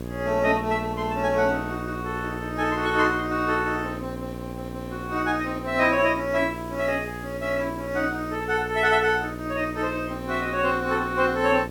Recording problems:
mains hum; 60 Hz, harmonics up to 1.2 kHz, SNR 10 dB
hiss; SNR 25 dB

